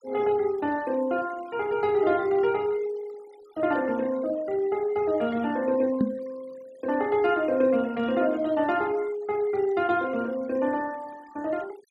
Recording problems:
noise reduction artefacts; signal-to-artefact ratio 23 dB
knock on the microphone; at 6 s; peak +4 dB vs average level

